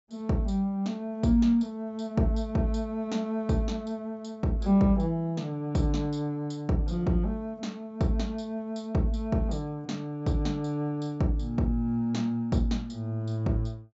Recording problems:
treble cut off; nothing above 8 kHz

